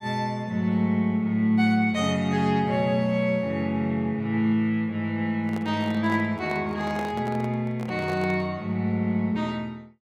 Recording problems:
microphone handling noise; from 5.5 to 8.5 s; peak -8 dB vs average level

